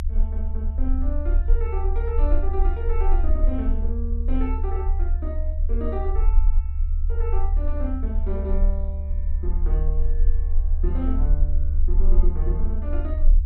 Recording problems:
rumble; below 68 Hz, strongest tone 26 Hz, SNR -9 dB

